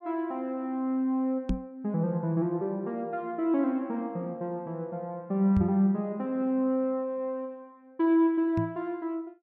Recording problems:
knock on the microphone; at 1.5 s, at 5.5 s and at 8.5 s; peak +3 dB vs average level

